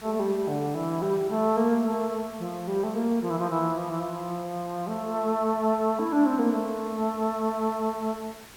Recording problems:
hiss; slope -2 dB per octave, SNR 20 dB

